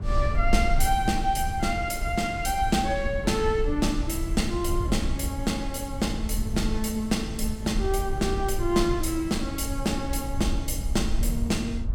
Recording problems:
rumble; below 70 Hz, SNR 5 dB

